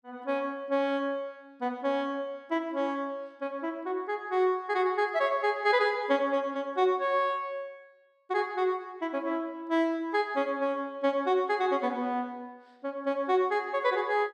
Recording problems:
none

